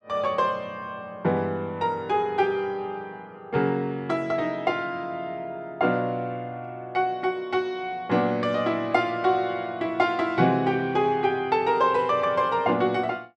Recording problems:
none

